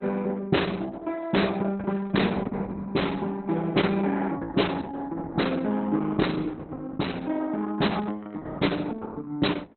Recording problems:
codec artefacts; Opus, log-spectral distance 5 dB, nothing above 4.1 kHz

